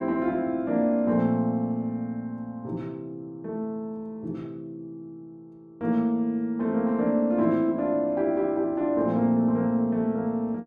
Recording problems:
none

